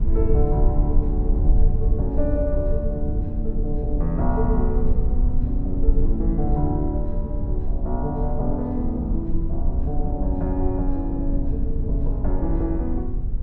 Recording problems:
low-frequency rumble; below 64 Hz, SNR -3 dB

